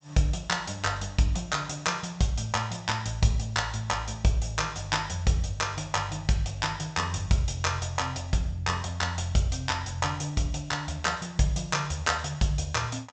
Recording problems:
treble cut off; nothing above 8 kHz

